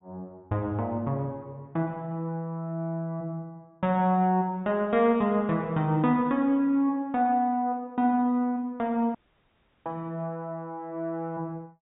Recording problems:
treble cut off; nothing above 4 kHz
dropout; at 9 s for 0.5 s

